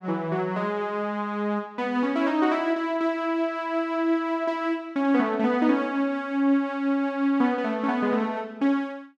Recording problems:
none

